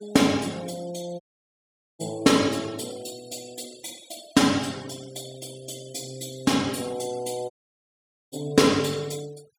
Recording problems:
noise reduction artefacts; signal-to-artefact ratio 21 dB
dropout; at 1 s for 1 s and at 7.5 s for 1 s

